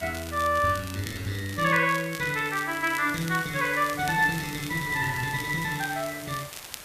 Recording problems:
background hiss; slope -1 dB per octave, SNR 15 dB
crackling; vinyl, SNR 15 dB

